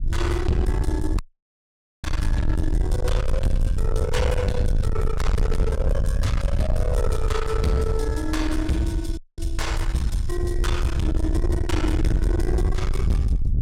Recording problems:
distorted audio; soft clipping, signal-to-distortion ratio 7 dB
rumble; below 88 Hz, SNR -1 dB
audio cutting out; at 1 s for 1 s and at 9 s

